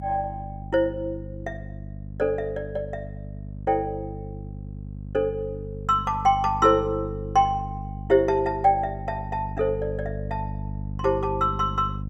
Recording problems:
hum; 50 Hz, harmonics up to 300 Hz, SNR 10 dB

